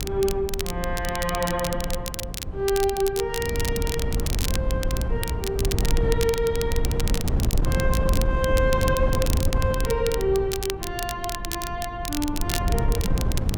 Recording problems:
wind noise; below 130 Hz, SNR 1 dB
crackle; vinyl, SNR 6 dB

